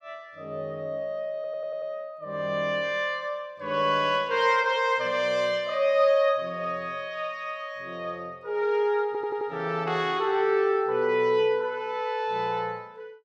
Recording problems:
stutter; at 1.5 s and at 9 s

